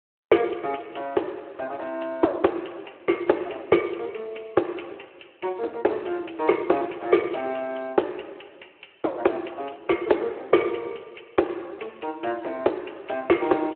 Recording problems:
telephone audio; 280 Hz to 3.1 kHz, Speex

